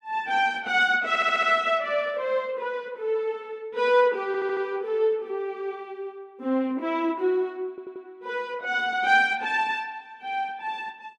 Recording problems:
stutter; at 1 s, at 4.5 s and at 7.5 s

